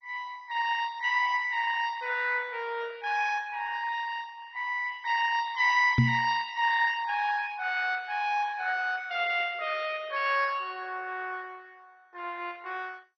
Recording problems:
lossy compression; MP2, log-spectral distance 5 dB, nothing above 5 kHz
knock on the microphone; at 6 s; peak +9 dB vs average level

